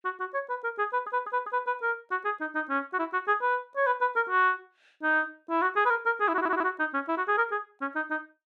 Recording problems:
audio stuttering; at 1 s and at 6.5 s

